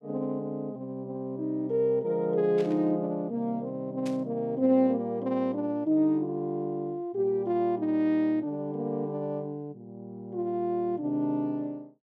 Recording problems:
burst of static; at 2.5 s and at 4 s; peak -11 dB vs average level

